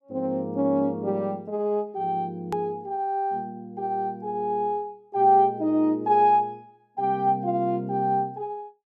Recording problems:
hard cut with a click; at 2.5 s

